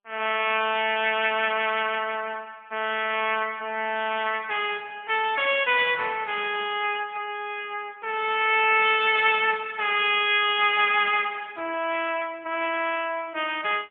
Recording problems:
phone line; 240 Hz to 3.5 kHz, AMR-NB, then MP3

